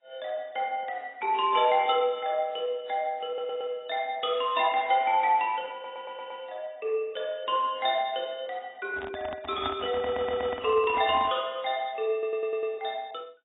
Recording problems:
codec artefacts; AAC, log-spectral distance 3 dB, nothing above 3.6 kHz
audio stuttering; 4 times, first at 3.5 s
microphone handling noise; from 9 to 11 s; peak -3 dB vs average level

